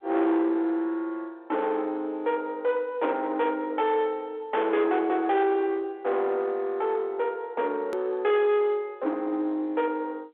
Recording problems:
phone line; 280 Hz to 3.8 kHz, G.711
distorted audio; soft clipping, signal-to-distortion ratio 11 dB
hard cut with a click; at 8 s

